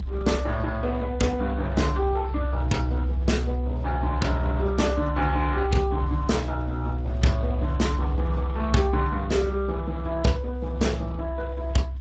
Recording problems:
codec artefacts; Speex, log-spectral distance 3 dB, nothing above 7.6 kHz
low-frequency rumble; below 68 Hz, strongest tone 66 Hz, SNR 3 dB

